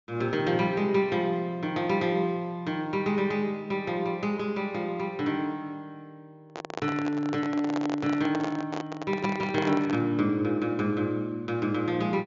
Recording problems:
low-pass filter; nothing above 7.3 kHz
handling noise; from 6.5 to 10 s; peak -2 dB vs average level

